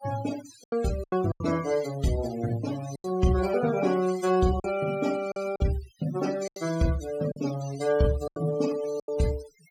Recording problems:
denoising artefacts; signal-to-artefact ratio 15 dB
packet loss; 8% of the sound replaced, filled with silence

